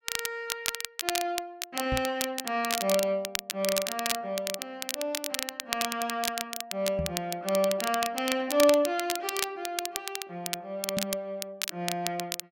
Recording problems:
crackle; vinyl, SNR 3 dB
microphone bump; at 2 s, at 7 s and at 11 s; peak +2 dB vs average level

